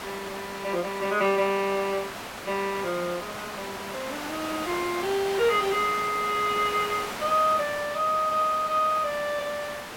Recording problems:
background hiss; SNR 9 dB

